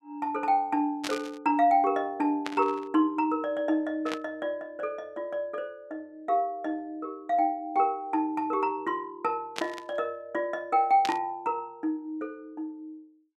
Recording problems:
burst of static; 5 times, first at 1 s; peak 0 dB vs average level

